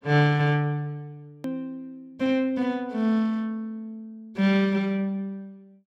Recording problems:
hard cut with a click; at 1.5 s

